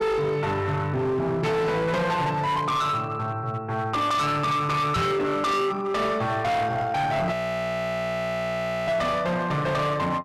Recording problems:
distorted audio; hard clipping, signal-to-distortion ratio 7 dB
microphone bump; at 5 s; peak +5 dB vs average level
frozen audio; at 7.5 s for 1.5 s

